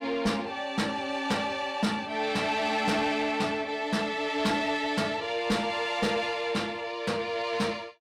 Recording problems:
distorted audio; soft clipping, signal-to-distortion ratio 12 dB

